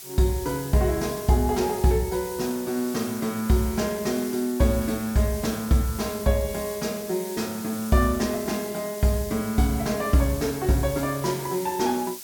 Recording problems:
hiss; slope +2 dB per octave, SNR 12 dB

